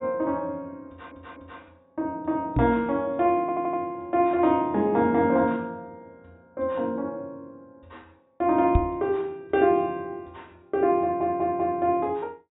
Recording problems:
treble cut off; nothing above 4 kHz
audio stuttering; at 1 s, at 3.5 s and at 11 s
microphone thump; at 2.5 s and at 9 s; peak +7 dB vs average level

